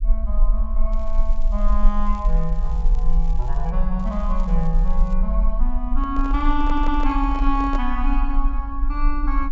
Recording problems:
low-pass filter; nothing above 8 kHz
rumble; below 40 Hz, strongest tone 22 Hz, SNR -3 dB
crackling; from 1 to 3.5 s and from 4 to 5 s; loose cable, SNR 27 dB
microphone handling noise; from 6 to 8 s; peak -3 dB vs average level
stutter; at 6.5 s

